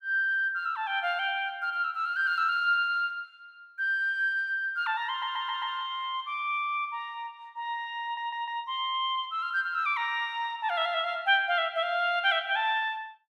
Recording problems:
stutter; at 5 s and at 8 s

